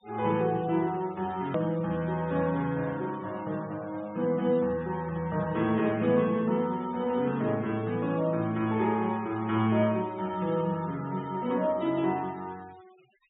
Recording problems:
treble cut off; nothing above 4 kHz
denoising artefacts; signal-to-artefact ratio 23 dB
hard cut with a click; at 1.5 s

